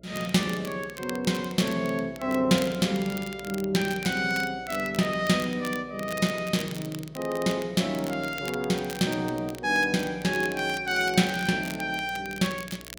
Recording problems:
electrical hum; 60 Hz, harmonics up to 660 Hz, SNR 24 dB
crackling; vinyl, SNR 16 dB

